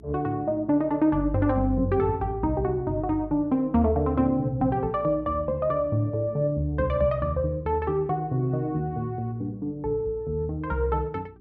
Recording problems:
electrical hum; 60 Hz, harmonics up to 420 Hz, SNR 25 dB

